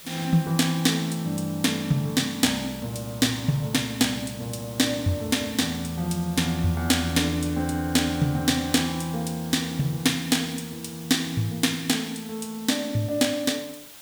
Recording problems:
hiss; slope 0 dB per octave, SNR 17 dB

